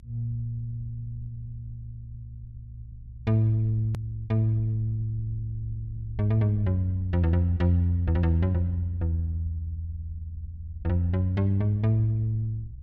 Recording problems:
low-frequency rumble; below 66 Hz, strongest tone 64 Hz, SNR 17 dB
edit click; at 4 s

